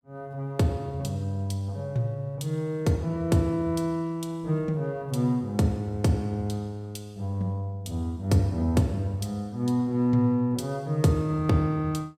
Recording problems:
none

